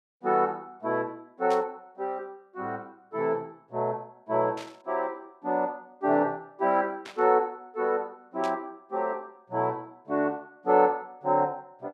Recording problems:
static burst; 4 times, first at 1.5 s; peak -9 dB vs average level

